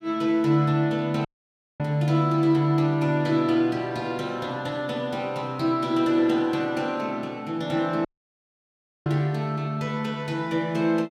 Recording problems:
dropout; at 1.5 s for 0.5 s and at 8 s for 1 s

